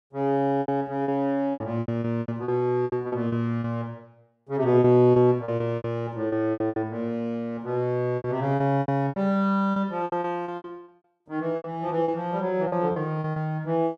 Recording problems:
lost packets; 15% of the sound replaced, filled with repeated pitch periods

